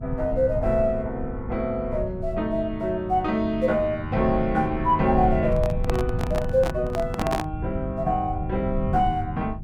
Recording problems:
electrical hum; 50 Hz, harmonics up to 400 Hz, SNR 14 dB
rumble; below 120 Hz, SNR 8 dB
microphone handling noise; from 5.5 to 7.5 s; peak +1 dB vs average level

